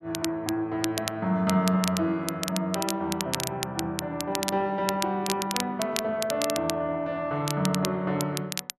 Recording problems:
crackle; vinyl, SNR 6 dB

